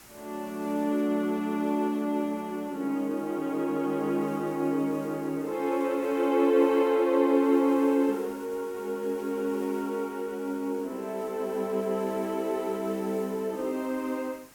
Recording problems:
hiss; slope -2 dB per octave, SNR 23 dB

